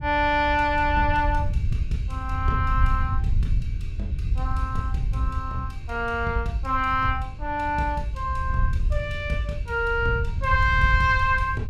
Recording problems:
wind on the microphone; below 88 Hz, SNR 3 dB

